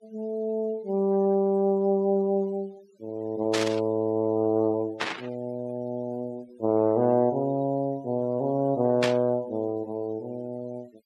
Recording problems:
noise reduction artefacts; signal-to-artefact ratio 27 dB
static burst; at 3.5 s, at 5 s and at 9 s; peak +3 dB vs average level

